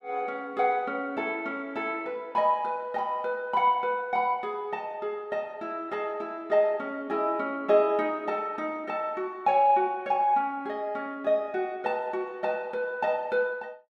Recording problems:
none

